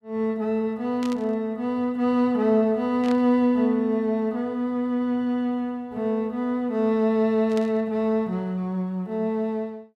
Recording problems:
static burst; at 1 s, at 3 s and at 7.5 s; peak -11 dB vs average level

